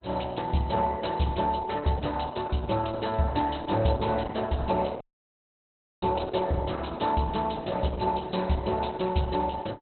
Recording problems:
lossy codec; Opus, log-spectral distance 7 dB, nothing above 4.1 kHz
dropout; at 5 s for 1 s

